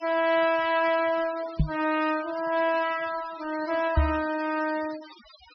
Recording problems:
treble missing; nothing above 5.5 kHz
denoising artefacts; signal-to-artefact ratio 18 dB
microphone thump; at 1.5 s and at 4 s; peak +6 dB vs average level

